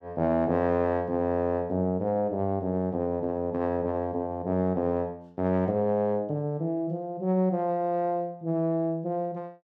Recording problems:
none

